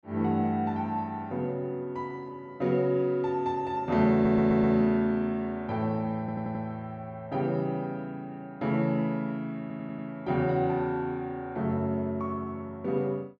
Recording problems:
stutter; at 4 s, at 6 s and at 9.5 s

